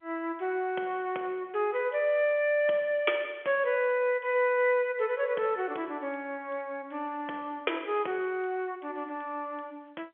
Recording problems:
phone line; 320 Hz to 3.4 kHz, G.711

